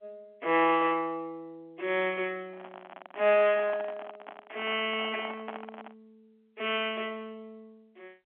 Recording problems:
telephone audio; 280 Hz to 3.4 kHz, G.711
handling noise; from 2.5 to 6 s; peak -6 dB vs average level

